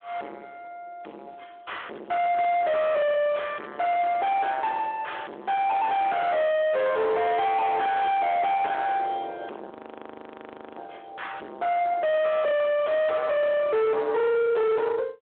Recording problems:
telephone audio; 650 Hz to 3.1 kHz, Speex
distortion; soft clipping, signal-to-distortion ratio 6 dB
frozen audio; at 9.5 s for 1 s

